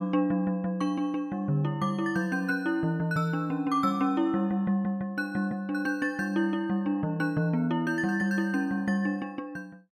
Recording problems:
none

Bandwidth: 15 kHz